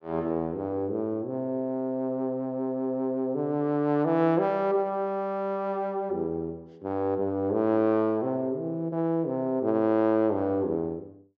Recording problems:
treble missing; nothing above 8 kHz

